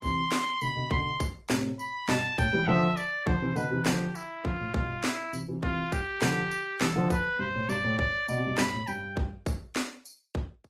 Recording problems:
codec artefacts; Vorbis, then Opus, log-spectral distance 3 dB, nothing above 15.1 kHz

